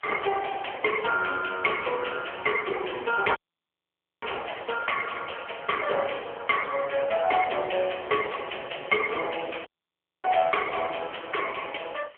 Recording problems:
phone line; 370 Hz to 3.2 kHz, AMR-NB
distortion; hard clipping, uneven, signal-to-distortion ratio 12 dB
hiss; SNR 27 dB
audio cutting out; at 3.5 s for 1 s and at 9.5 s for 0.5 s

